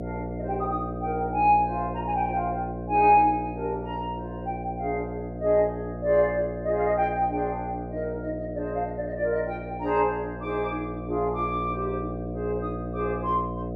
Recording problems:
electrical hum; 60 Hz, harmonics up to 720 Hz, SNR 8 dB

